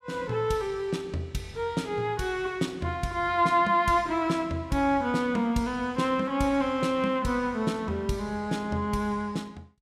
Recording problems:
none

